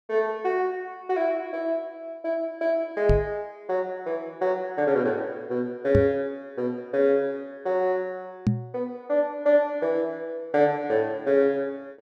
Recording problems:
microphone bump; at 3 s, at 6 s and at 8.5 s; peak +7 dB vs average level

